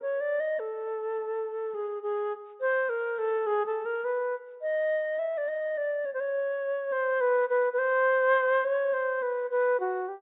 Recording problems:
low-pass filter; nothing above 4 kHz

